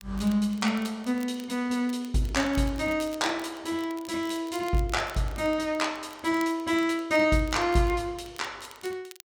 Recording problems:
crackling; vinyl, SNR 22 dB

